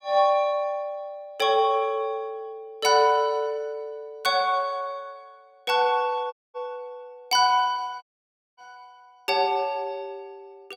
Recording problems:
audio cutting out; at 6.5 s and at 8 s for 0.5 s

